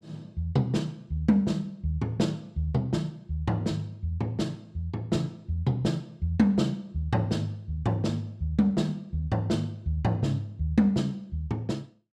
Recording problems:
none

